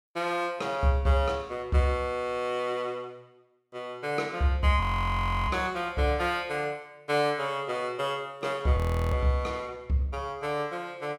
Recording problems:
audio freezing; at 5 s for 0.5 s and at 9 s

